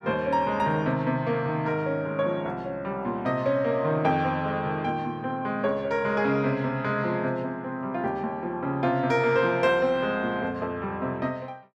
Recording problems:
none

